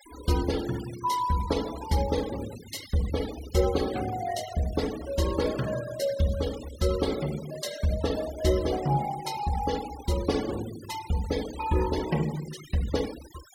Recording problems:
denoising artefacts; signal-to-artefact ratio 14 dB

